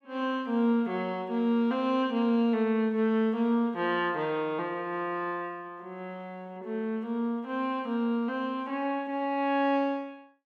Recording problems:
none

